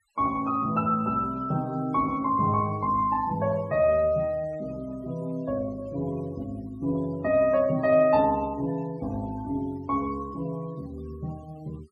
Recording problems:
denoising artefacts; signal-to-artefact ratio 23 dB

